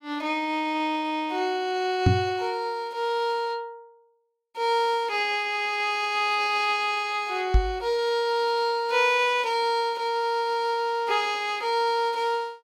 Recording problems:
microphone bump; at 2 s and at 7.5 s; peak +9 dB vs average level

